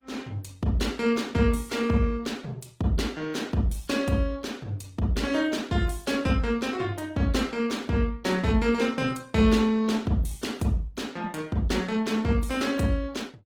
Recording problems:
lossy compression; Opus, log-spectral distance 3 dB, nothing above 19 kHz

